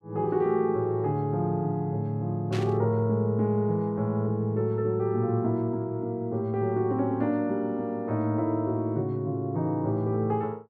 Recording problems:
burst of static; at 2.5 s; peak -7 dB vs average level

